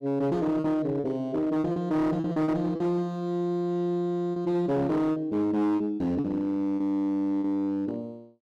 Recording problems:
distorted audio; hard clipping, signal-to-distortion ratio 11 dB
lost packets; 7% of the sound replaced, filled with repeated pitch periods

